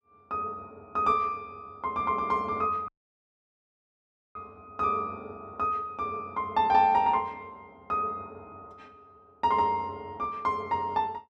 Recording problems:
dropout; at 3 s for 1.5 s

